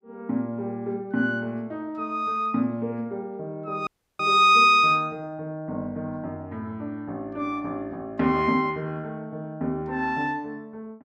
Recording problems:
audio cutting out; at 4 s

